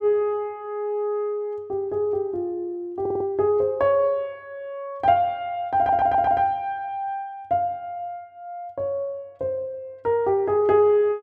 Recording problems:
audio stuttering; at 3 s and at 6 s

